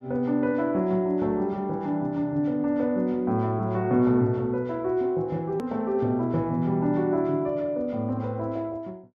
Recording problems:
treble missing; nothing above 8 kHz
hard cut with a click; at 5.5 s

